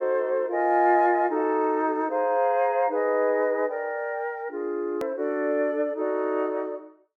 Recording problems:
edit click; at 5 s

